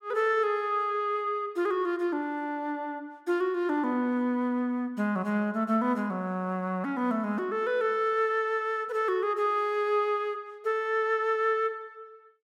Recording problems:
none

